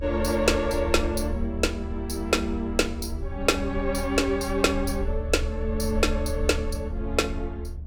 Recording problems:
low-frequency rumble; below 74 Hz, strongest tone 30 Hz, SNR 7 dB

